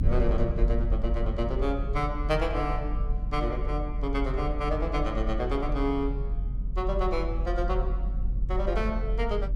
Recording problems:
rumble; below 50 Hz, strongest tone 44 Hz, SNR 0 dB

